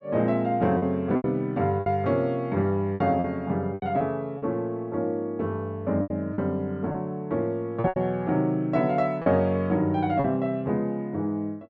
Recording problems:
packet loss; 7% of the sound replaced, filled with repeated pitch periods

